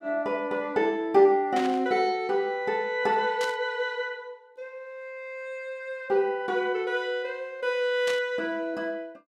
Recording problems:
burst of static; at 1.5 s, at 3.5 s and at 8 s; peak -4 dB vs average level

